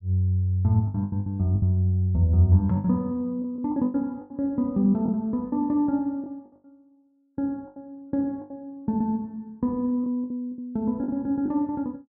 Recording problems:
packet loss; 9% of the sound replaced, filled with the last packet

